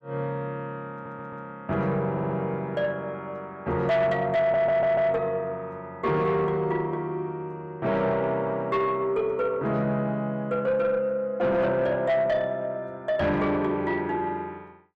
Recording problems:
distorted audio; soft clipping, signal-to-distortion ratio 11 dB
stutter; at 1 s, at 2 s and at 4.5 s

